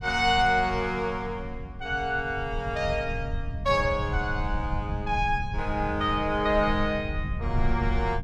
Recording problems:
low-frequency rumble; below 110 Hz, SNR 7 dB

